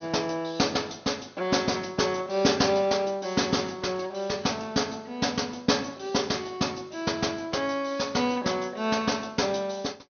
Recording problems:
treble cut off; nothing above 6.4 kHz

